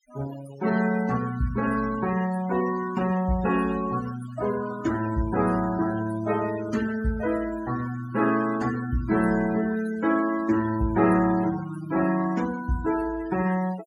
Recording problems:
denoising artefacts; signal-to-artefact ratio 15 dB

